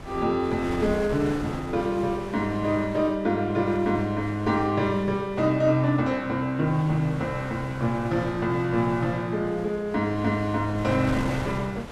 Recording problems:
wind noise; below 970 Hz, SNR 13 dB

